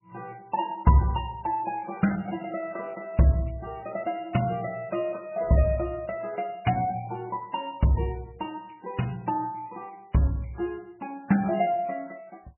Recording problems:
lossy codec; MP3, log-spectral distance 5 dB, nothing above 2.5 kHz

